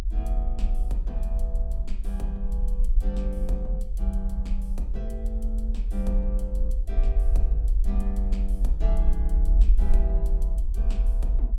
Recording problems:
rumble; below 50 Hz, SNR -10 dB
wind noise; below 240 Hz, SNR 19 dB

